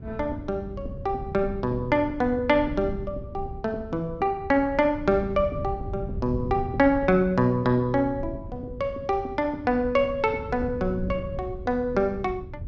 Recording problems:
wind noise; below 130 Hz, SNR 12 dB

